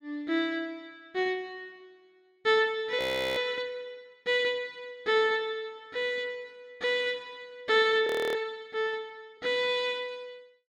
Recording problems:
audio freezing; at 3 s and at 8 s

